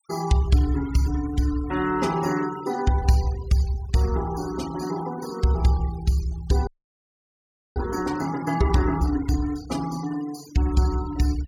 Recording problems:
denoising artefacts; signal-to-artefact ratio 17 dB
frozen audio; at 6.5 s for 1 s

